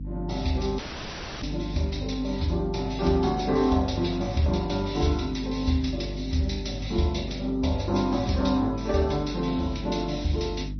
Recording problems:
lossy compression; MP3, then MP2, log-spectral distance 5 dB, nothing above 6 kHz
mains hum; 50 Hz, harmonics up to 300 Hz, SNR 9 dB
audio cutting out; at 1 s for 0.5 s

